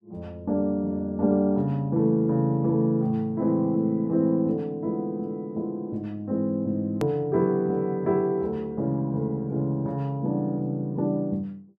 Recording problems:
hard cut with a click; at 7 s

